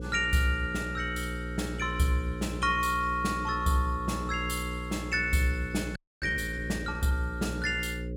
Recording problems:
electrical hum; 60 Hz, harmonics up to 540 Hz, SNR 7 dB
frozen audio; at 6 s

